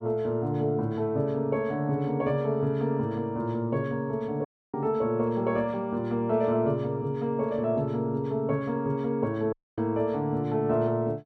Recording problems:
dropout; at 4.5 s and at 9.5 s

